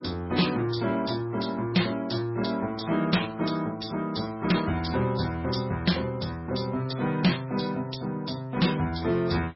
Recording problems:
codec artefacts; AAC, then MP3, log-spectral distance 5 dB, nothing above 5.5 kHz
distorted audio; soft clipping, signal-to-distortion ratio 11 dB

